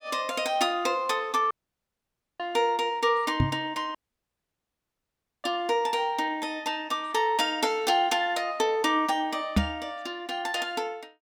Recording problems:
dropout; at 1.5 s for 1 s and at 4 s for 1.5 s
microphone bump; at 3.5 s and at 9.5 s; peak +8 dB vs average level

